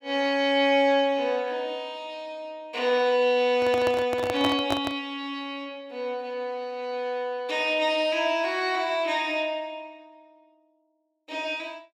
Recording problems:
handling noise; from 3.5 to 5 s; peak +1 dB vs average level

